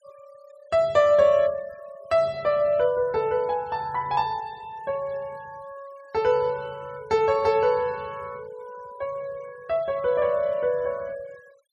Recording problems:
denoising artefacts; signal-to-artefact ratio 27 dB

